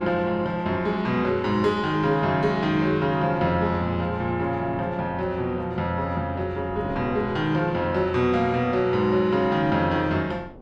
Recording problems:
wind noise; below 450 Hz, SNR 20 dB

